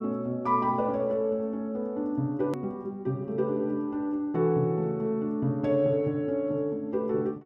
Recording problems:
edit click; at 2.5 s

